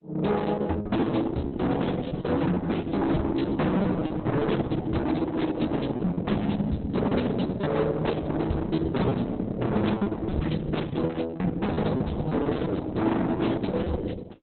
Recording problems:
codec artefacts; Opus, log-spectral distance 4 dB, nothing above 4.1 kHz
distortion; hard clipping, signal-to-distortion ratio 8 dB
lost packets; 11% of the sound replaced, filled with repeated pitch periods

